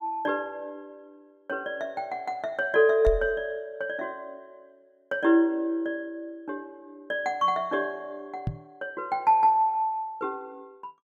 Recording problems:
microphone thump; at 3 s and at 8.5 s; peak +2 dB vs average level

